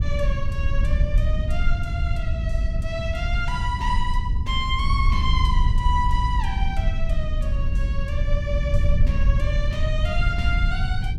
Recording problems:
low-frequency rumble; below 78 Hz, SNR -5 dB

